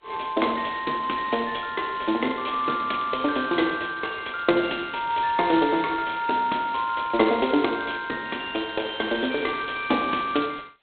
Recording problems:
telephone audio; 240 Hz to 3.7 kHz, G.726

